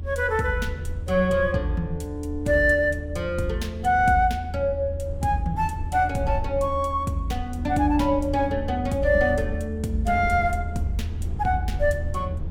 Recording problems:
low-frequency rumble; below 82 Hz, strongest tone 80 Hz, SNR 8 dB

